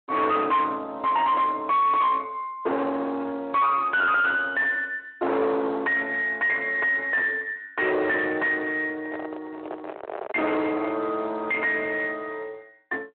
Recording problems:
telephone audio; 300 Hz to 3.6 kHz, Speex
distorted audio; soft clipping, signal-to-distortion ratio 6 dB
handling noise; from 9 to 11 s; peak -6 dB vs average level

